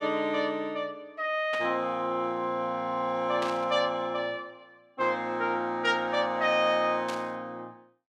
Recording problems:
burst of static; at 1.5 s, at 3.5 s and at 7 s; peak -5 dB vs average level

